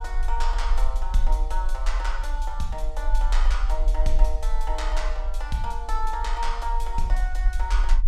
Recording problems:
rumble; below 42 Hz, strongest tone 20 Hz, SNR -4 dB

